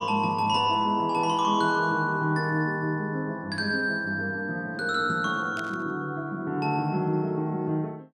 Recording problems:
static burst; at 5.5 s; peak -11 dB vs average level

